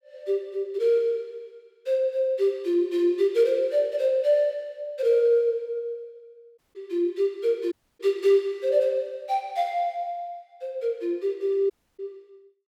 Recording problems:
audio cutting out; at 6.5 s, at 7.5 s and at 12 s

